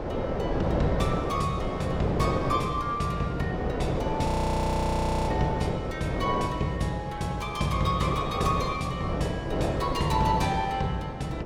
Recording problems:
wind on the microphone; below 630 Hz, SNR 3 dB
audio freezing; at 4.5 s for 1 s

